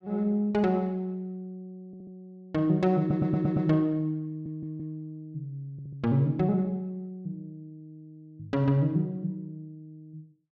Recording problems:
stutter; 4 times, first at 2 s

